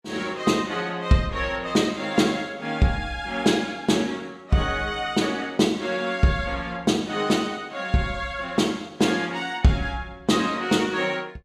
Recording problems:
none

